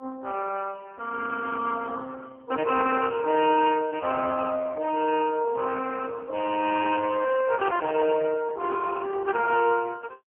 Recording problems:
telephone audio; 240 Hz to 3.1 kHz, AMR-NB, then MP3

